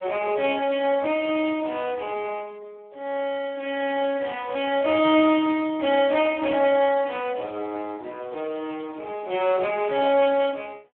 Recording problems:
telephone audio; 280 Hz to 3.4 kHz, Speex

